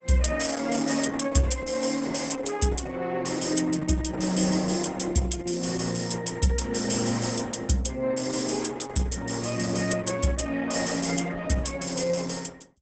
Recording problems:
lossy codec; Opus, log-spectral distance 6 dB, nothing above 8 kHz

